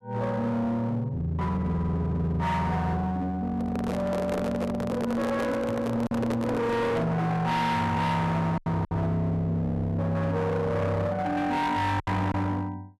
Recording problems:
distortion; hard clipping, uneven, signal-to-distortion ratio 6 dB
packet loss; 2% of the sound replaced, filled with silence
microphone handling noise; from 3.5 to 7 s; peak -1 dB vs average level

